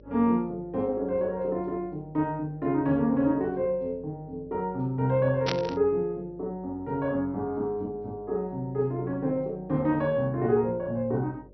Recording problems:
low-pass filter; nothing above 5.8 kHz
hum; 50 Hz, harmonics up to 600 Hz, SNR 25 dB
burst of static; at 5.5 s; peak +2 dB vs average level

